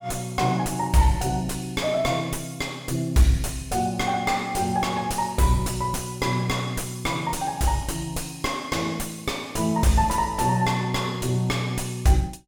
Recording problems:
distortion; soft clipping, signal-to-distortion ratio 3 dB

